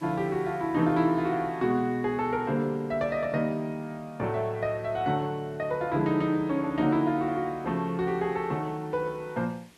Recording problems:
hiss; SNR 30 dB

